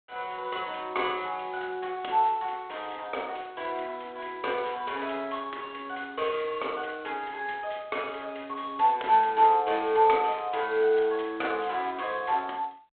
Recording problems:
telephone audio; 340 Hz to 3.5 kHz, G.726

